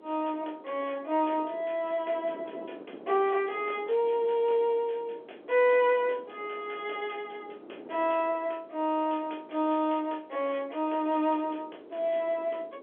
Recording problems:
telephone audio; 280 Hz to 3.4 kHz, G.711
wind on the microphone; below 550 Hz, SNR 20 dB

